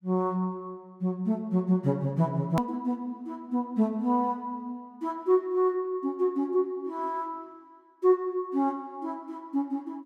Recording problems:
click at an edit; at 2.5 s

